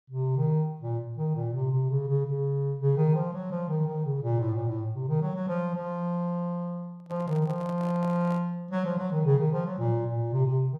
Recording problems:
handling noise; from 7 to 8.5 s; peak -12 dB vs average level

